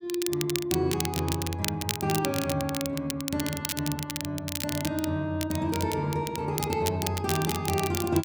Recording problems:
crackling; vinyl, SNR 5 dB

